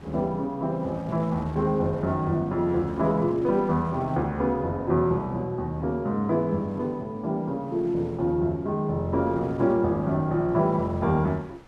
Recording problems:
wind noise; below 1.2 kHz, SNR 24 dB

